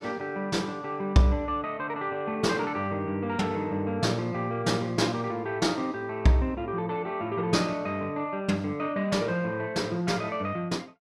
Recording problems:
none

